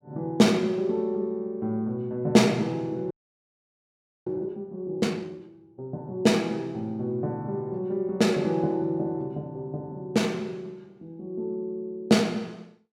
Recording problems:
frozen audio; at 3 s for 1 s

